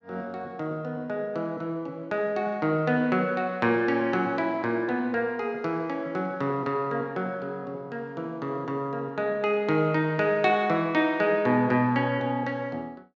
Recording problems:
none

